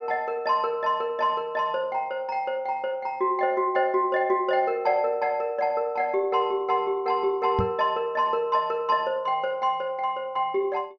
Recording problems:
low-pass filter; nothing above 6.3 kHz
microphone thump; at 7.5 s; peak +2 dB vs average level

